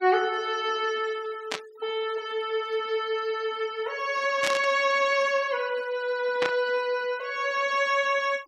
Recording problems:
noise reduction artefacts; signal-to-artefact ratio 22 dB
static burst; at 1.5 s, at 4.5 s and at 6.5 s; peak +2 dB vs average level

